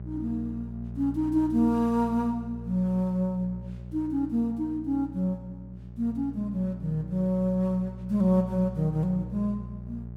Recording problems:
hum; 60 Hz, harmonics up to 600 Hz, SNR 12 dB

